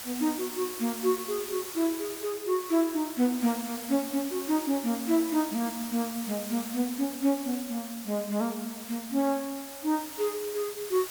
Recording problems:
hiss; slope 0 dB per octave, SNR 9 dB

